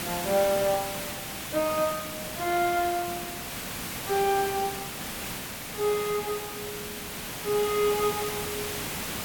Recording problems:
background hiss; slope -2 dB per octave, SNR 5 dB

